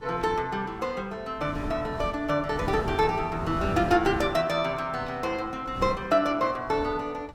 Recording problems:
wind on the microphone; below 290 Hz, SNR 11 dB

